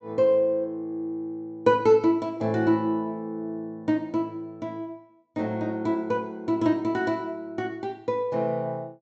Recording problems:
treble missing; nothing above 8 kHz

